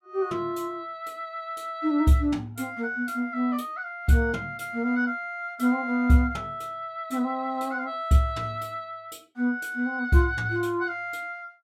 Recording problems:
none

